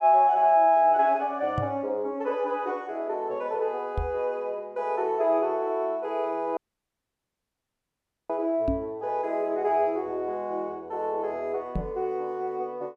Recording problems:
microphone thump; 4 times, first at 1.5 s; peak +2 dB vs average level
audio cutting out; at 6.5 s for 1.5 s

